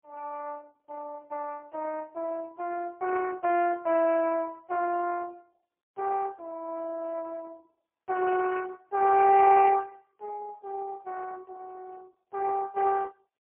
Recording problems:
phone line; 340 Hz to 3 kHz, AMR-NB, then MP3

